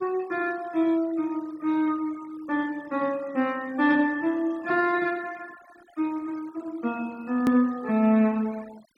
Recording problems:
noise reduction artefacts; signal-to-artefact ratio 24 dB
edit click; at 7.5 s

